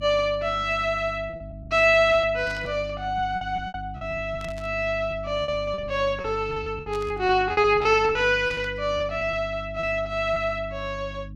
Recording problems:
electrical hum; 50 Hz, harmonics up to 300 Hz, SNR 15 dB
lost packets; 9% of the sound replaced, filled with repeated pitch periods
static burst; 4 times, first at 2.5 s; peak -13 dB vs average level

